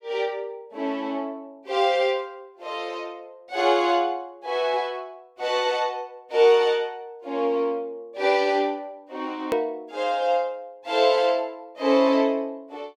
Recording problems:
hard cut with a click; at 9.5 s

